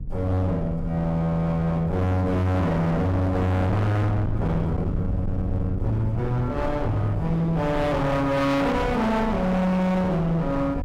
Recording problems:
distorted audio; hard clipping, uneven, signal-to-distortion ratio 5 dB
rumble; below 170 Hz, SNR 8 dB

